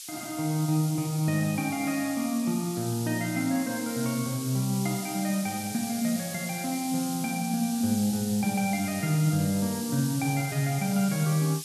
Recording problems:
background hiss; SNR 9 dB

